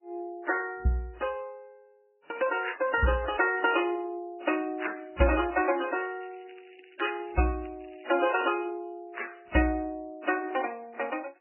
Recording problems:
codec artefacts; MP3, then AAC, log-spectral distance 7 dB, nothing above 2.6 kHz
crackle; from 5.5 to 8 s and at 9.5 s; loose cable, SNR 27 dB

